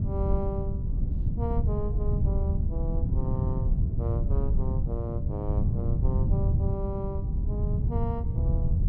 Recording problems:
wind on the microphone; below 120 Hz, SNR -9 dB

